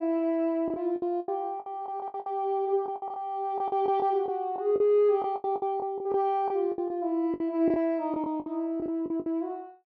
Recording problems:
packet loss; 14% of the sound replaced, filled with the last packet

